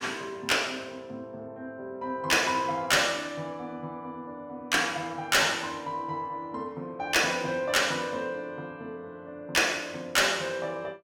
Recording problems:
distortion; hard clipping, uneven, signal-to-distortion ratio 11 dB

